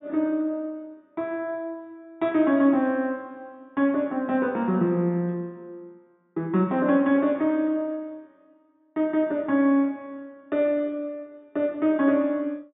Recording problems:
treble missing; nothing above 4 kHz

